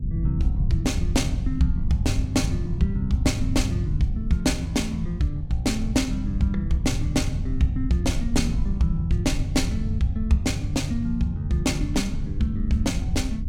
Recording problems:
rumble; below 110 Hz, SNR 3 dB

